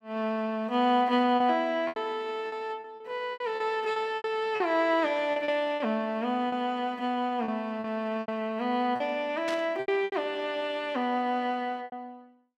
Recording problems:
lost packets; 9% of the sound replaced, filled with repeated pitch periods
static burst; at 9.5 s; peak -4 dB vs average level

